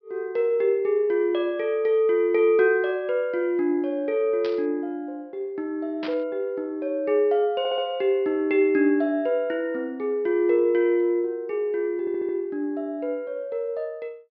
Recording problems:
low-pass filter; nothing above 5.5 kHz
burst of static; at 4.5 s and at 6 s; peak -8 dB vs average level
audio stuttering; at 7.5 s and at 12 s

